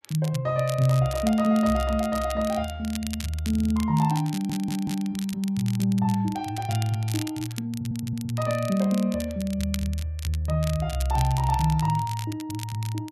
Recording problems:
crackle; vinyl, SNR 14 dB
audio stuttering; at 3.5 s, at 4.5 s and at 7.5 s

